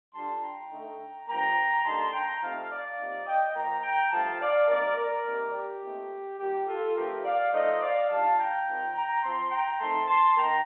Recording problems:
phone line; 190 Hz to 3.7 kHz, G.711

